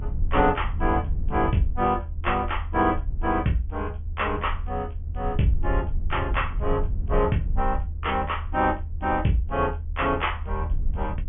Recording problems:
treble missing; nothing above 3.3 kHz
low-frequency rumble; below 78 Hz, SNR 5 dB

